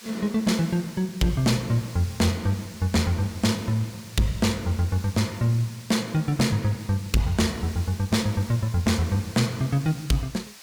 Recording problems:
distortion; soft clipping, signal-to-distortion ratio 11 dB
hiss; slope +2 dB per octave, SNR 18 dB

